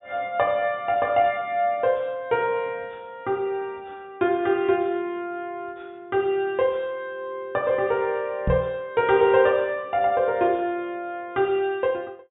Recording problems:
treble missing; nothing above 4 kHz
microphone bump; at 8.5 s; peak +3 dB vs average level

